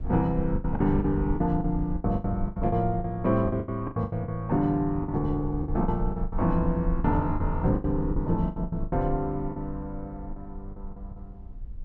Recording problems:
low-frequency rumble; below 62 Hz, SNR 9 dB
lost packets; 16% of the sound replaced, filled with the last packet

